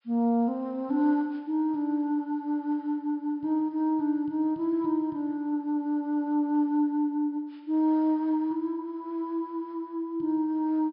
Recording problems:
low-pass filter; nothing above 5.5 kHz

